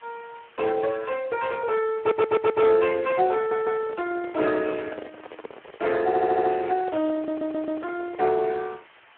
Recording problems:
telephone audio; 280 Hz to 3.1 kHz, Speex
background hiss; SNR 27 dB
stutter; 4 times, first at 2 s
handling noise; from 3 to 8.5 s; peak -8 dB vs average level

